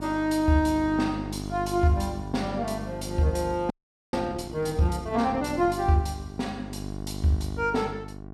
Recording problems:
hum; 50 Hz, harmonics up to 1.1 kHz, SNR 10 dB
audio freezing; at 3.5 s

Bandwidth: 15 kHz